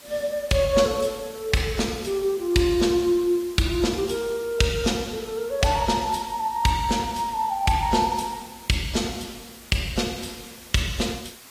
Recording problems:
lossy codec; AAC, log-spectral distance 5 dB
hiss; slope -1 dB per octave, SNR 20 dB

